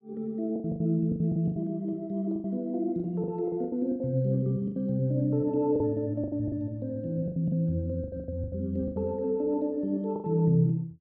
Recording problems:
lost packets; 14% of the sound replaced, filled with the last packet

